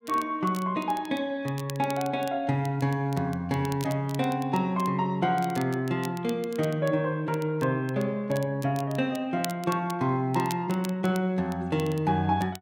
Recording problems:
crackle; vinyl, SNR 18 dB

